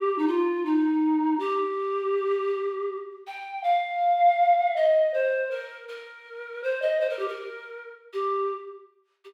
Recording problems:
none

